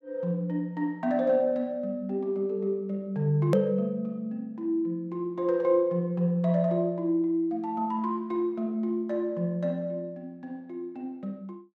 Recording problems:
click at an edit; at 3.5 s

